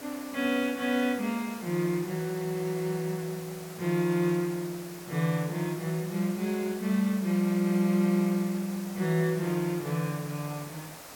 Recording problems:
hiss; slope -3 dB per octave, SNR 15 dB

